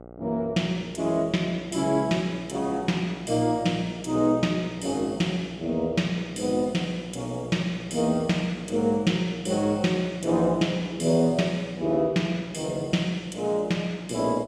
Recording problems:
hum; 60 Hz, harmonics up to 1.5 kHz, SNR 19 dB

